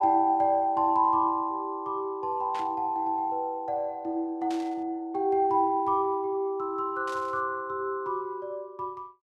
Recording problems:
burst of static; at 2.5 s, at 4.5 s and at 7 s; peak -11 dB vs average level

